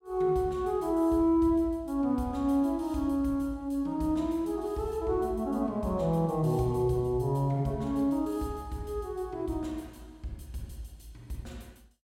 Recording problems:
none

